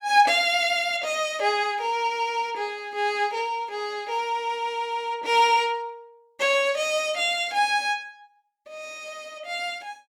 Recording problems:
none

